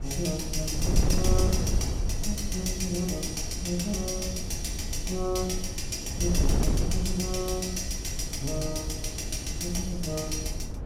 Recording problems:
wind noise; below 110 Hz, SNR 2 dB

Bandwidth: 16 kHz